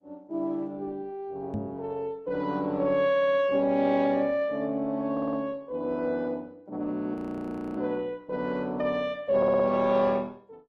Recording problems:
lossy codec; Opus, log-spectral distance 2 dB
knock on the microphone; at 1.5 s; peak -1 dB vs average level
audio stuttering; at 3 s, at 5 s and at 9.5 s
audio freezing; at 7 s for 0.5 s

